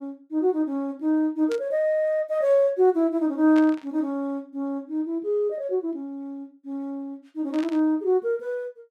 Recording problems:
burst of static; at 1.5 s, at 3.5 s and at 7.5 s; peak -10 dB vs average level

